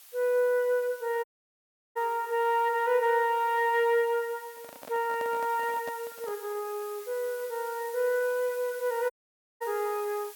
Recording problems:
hiss; slope +3 dB per octave, SNR 18 dB
dropout; at 1 s for 0.5 s and at 9 s for 0.5 s
handling noise; from 4.5 to 6.5 s; peak -9 dB vs average level

